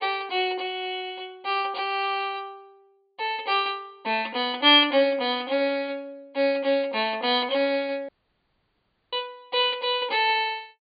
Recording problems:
treble missing; nothing above 4.7 kHz
audio cutting out; at 8 s for 1 s

